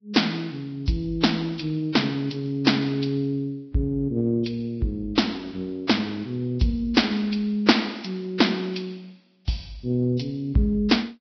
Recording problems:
lossy compression; Vorbis, log-spectral distance 4 dB, nothing above 5.5 kHz

